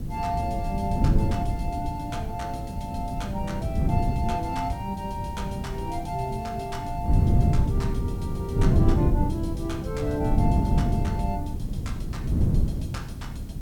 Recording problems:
background hiss; slope 0 dB per octave, SNR 22 dB
wind noise; below 170 Hz, SNR -5 dB

